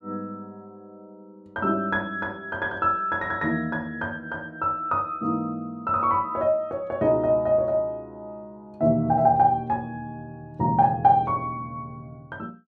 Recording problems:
none

